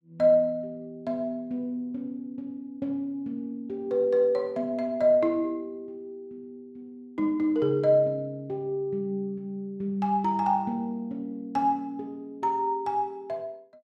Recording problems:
none

